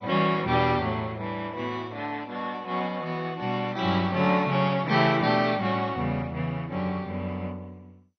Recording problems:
lossy compression; MP2, log-spectral distance 3 dB

